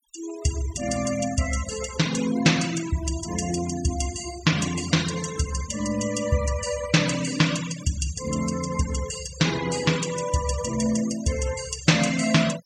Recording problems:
noise reduction artefacts; signal-to-artefact ratio 12 dB

